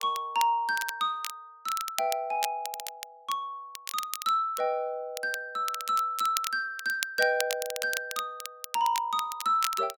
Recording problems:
crackling; vinyl, SNR 8 dB

